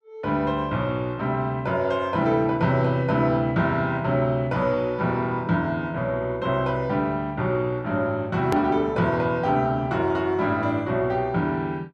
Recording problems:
click at an edit; at 8.5 s

